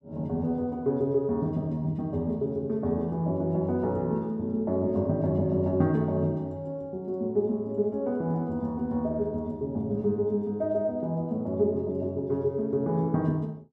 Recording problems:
none

